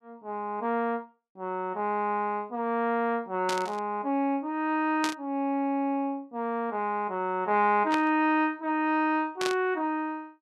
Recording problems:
burst of static; 4 times, first at 3.5 s; peak 0 dB vs average level

